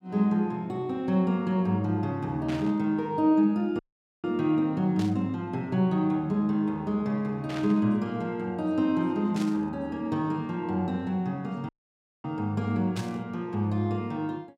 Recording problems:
static burst; 5 times, first at 2.5 s; peak -8 dB vs average level
audio cutting out; at 4 s and at 12 s for 0.5 s

